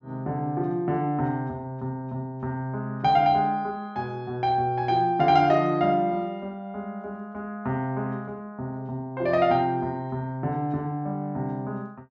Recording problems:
low-pass filter; nothing above 7.5 kHz

